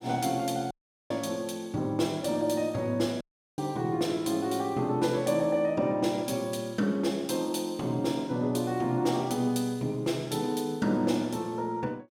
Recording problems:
audio cutting out; at 0.5 s and at 3 s

